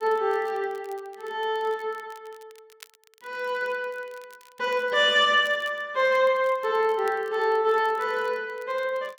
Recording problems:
crackling; vinyl, SNR 29 dB

